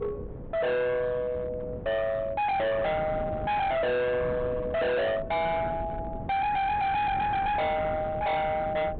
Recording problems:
low-pass filter; nothing above 4 kHz
distorted audio; hard clipping, uneven, signal-to-distortion ratio 6 dB
wind on the microphone; below 420 Hz, SNR 11 dB

